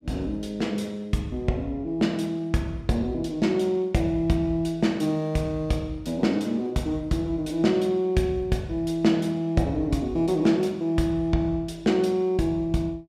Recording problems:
none

